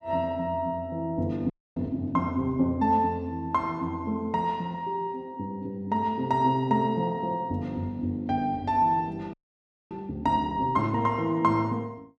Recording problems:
frozen audio; at 1.5 s and at 9.5 s for 0.5 s

